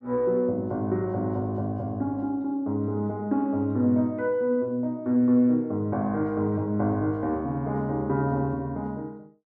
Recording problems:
none

